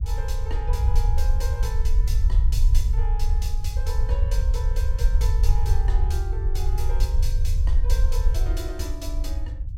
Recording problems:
low-frequency rumble; below 62 Hz, SNR -12 dB

